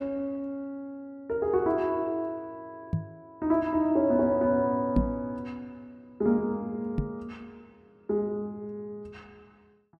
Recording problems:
microphone bump; at 3 s, at 5 s and at 7 s; peak +7 dB vs average level

